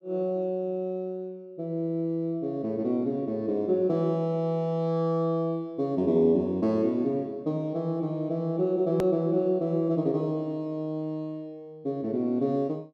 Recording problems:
hard cut with a click; at 9 s

